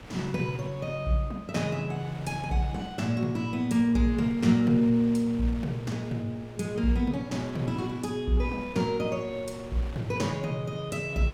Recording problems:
wind on the microphone; below 1.6 kHz, SNR 18 dB

